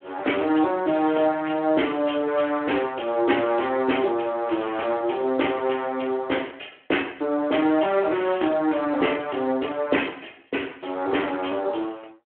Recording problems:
telephone audio; 240 Hz to 3.2 kHz, Speex

